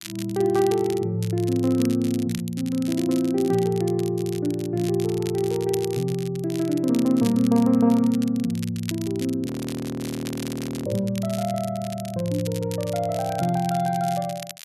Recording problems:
crackle; vinyl, SNR 16 dB
audio freezing; at 9.5 s for 1.5 s

